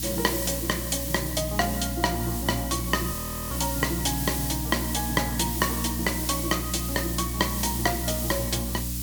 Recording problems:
hum; 60 Hz, harmonics up to 300 Hz, SNR 5 dB
hiss; SNR 3 dB
audio freezing; at 3 s

